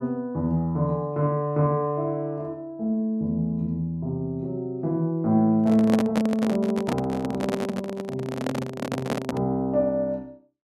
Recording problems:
microphone handling noise; from 5.5 to 9.5 s; peak +2 dB vs average level

